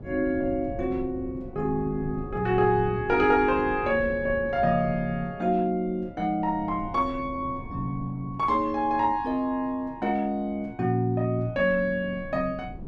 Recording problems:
wind noise; below 240 Hz, SNR 15 dB

